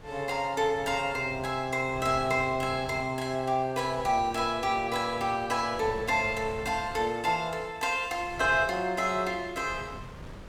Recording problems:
wind on the microphone; below 560 Hz, SNR 18 dB

